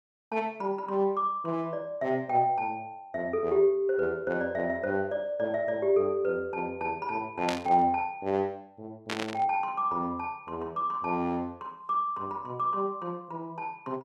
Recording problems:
burst of static; at 7.5 s and at 9 s; peak +1 dB vs average level

